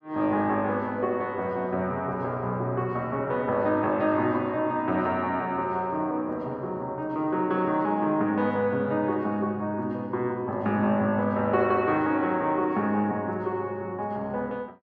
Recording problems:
none

